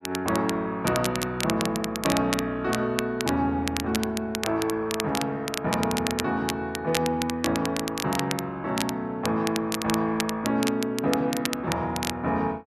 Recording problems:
crackle; vinyl, SNR 6 dB

